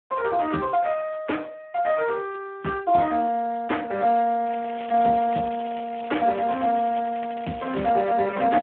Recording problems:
phone line; 170 Hz to 2.8 kHz, Speex
crackle; from 4.5 to 7 s and at 7 s; loose cable, SNR 17 dB

